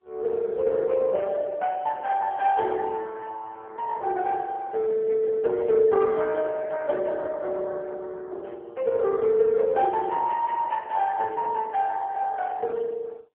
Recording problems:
telephone audio; 340 Hz to 3.6 kHz, AMR-NB

